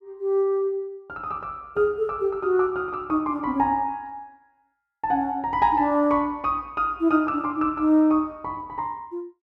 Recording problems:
none

